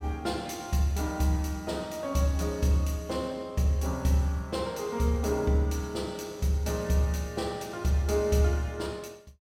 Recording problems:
none

